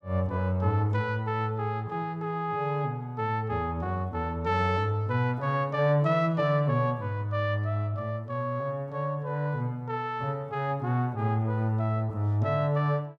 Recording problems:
none

